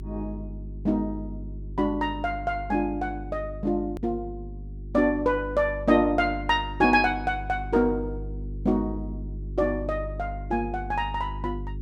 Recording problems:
electrical hum; 50 Hz, harmonics up to 400 Hz, SNR 11 dB
hard cut with a click; at 4 s

